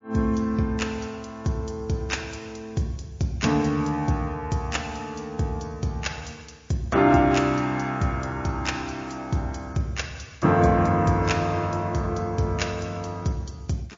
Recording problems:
codec artefacts; MP3, log-spectral distance 4 dB

